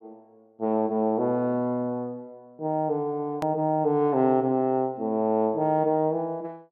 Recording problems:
edit click; at 3.5 s

